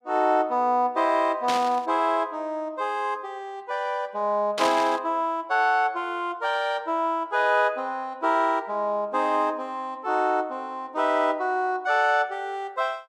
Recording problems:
static burst; at 1.5 s and at 4.5 s; peak 0 dB vs average level

